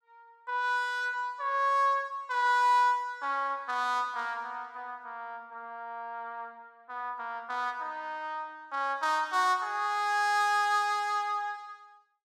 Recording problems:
none

